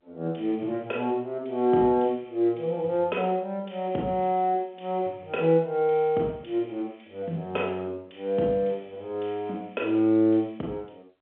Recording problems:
telephone audio; 190 Hz to 3.5 kHz, G.711

